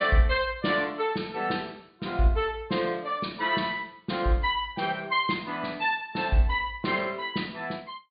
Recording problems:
low-pass filter; nothing above 4.7 kHz

